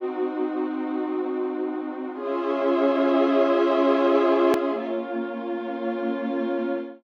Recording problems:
hard cut with a click; at 4.5 s

